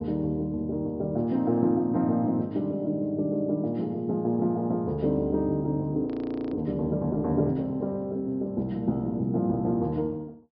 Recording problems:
treble cut off; nothing above 5.5 kHz
frozen audio; at 6 s

